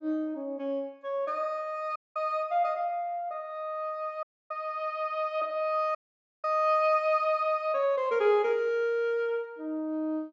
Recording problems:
treble missing; nothing above 8 kHz
audio cutting out; at 2 s, at 4 s and at 6 s

